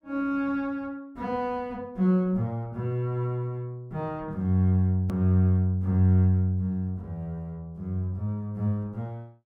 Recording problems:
click at an edit; at 5 s

